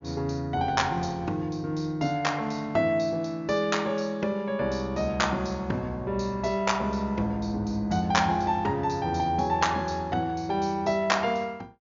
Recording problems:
treble missing; nothing above 7.2 kHz

